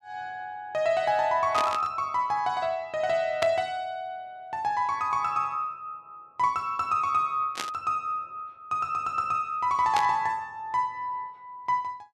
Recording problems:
static burst; 4 times, first at 1.5 s; peak +1 dB vs average level

